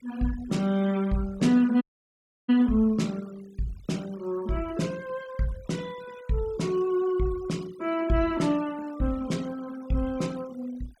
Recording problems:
noise reduction artefacts; signal-to-artefact ratio 23 dB
audio cutting out; at 2 s for 0.5 s

